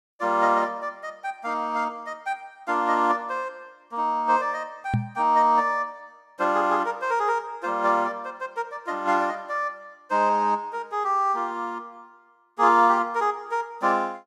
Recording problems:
knock on the microphone; at 5 s; peak +4 dB vs average level

